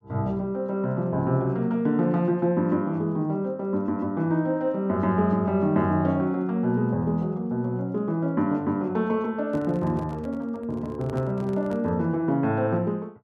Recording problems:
microphone handling noise; from 9.5 to 12 s; peak -10 dB vs average level

